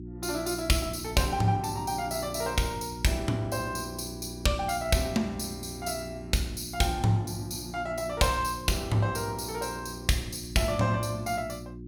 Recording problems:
hum; 60 Hz, harmonics up to 360 Hz, SNR 12 dB

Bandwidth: 17 kHz